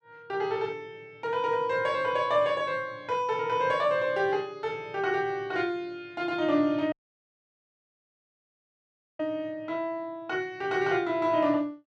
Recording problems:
audio cutting out; at 7 s for 2.5 s

